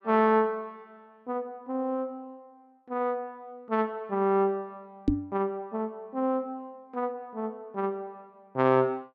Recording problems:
knock on the microphone; at 5 s; peak +9 dB vs average level

